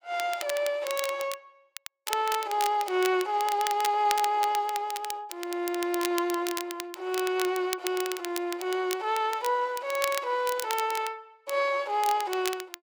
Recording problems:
crackle; vinyl, SNR 9 dB

